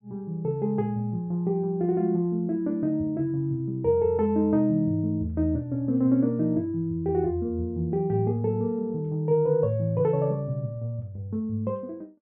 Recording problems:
treble missing; nothing above 3.4 kHz

